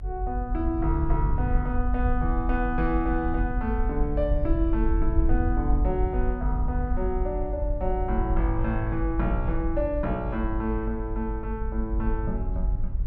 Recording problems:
rumble; below 58 Hz, SNR 0 dB

